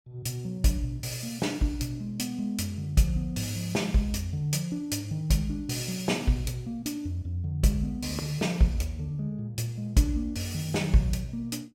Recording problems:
none

